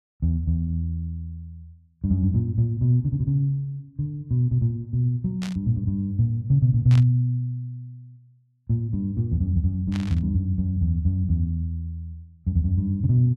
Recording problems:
burst of static; at 5.5 s, at 7 s and at 10 s; peak -9 dB vs average level

